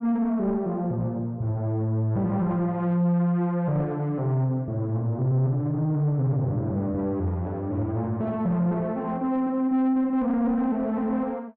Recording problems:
distortion; soft clipping, signal-to-distortion ratio 11 dB

